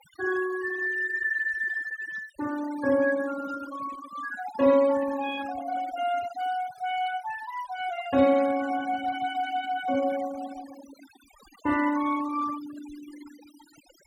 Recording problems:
denoising artefacts; signal-to-artefact ratio 16 dB

